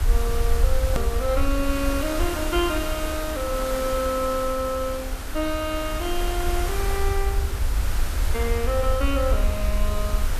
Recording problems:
background hiss; SNR 6 dB
low-frequency rumble; below 62 Hz, SNR 1 dB
hard cut with a click; at 1 s

